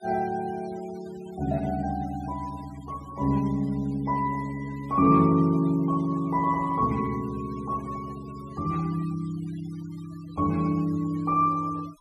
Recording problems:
noise reduction artefacts; signal-to-artefact ratio 23 dB

